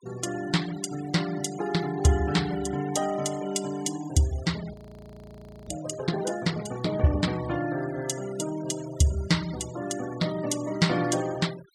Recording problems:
noise reduction artefacts; signal-to-artefact ratio 16 dB
audio freezing; at 4.5 s for 1 s

